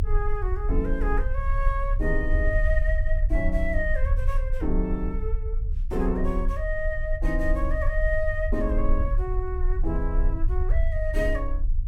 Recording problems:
low-frequency rumble; below 52 Hz, SNR -2 dB

